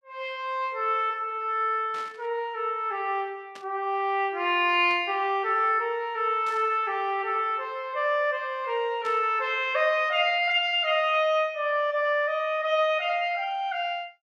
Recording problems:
burst of static; 5 times, first at 2 s; peak -14 dB vs average level

